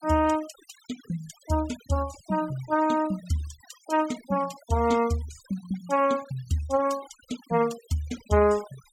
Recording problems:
noise reduction artefacts; signal-to-artefact ratio 19 dB

